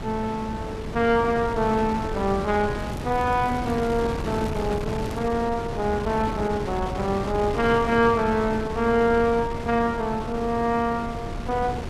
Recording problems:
wind on the microphone; below 500 Hz, SNR 8 dB
crackle; from 3 to 5.5 s; loose cable, SNR 27 dB

